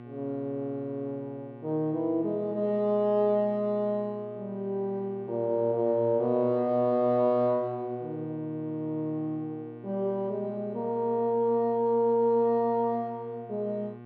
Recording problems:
electrical hum; 60 Hz, harmonics up to 1.9 kHz, SNR 17 dB

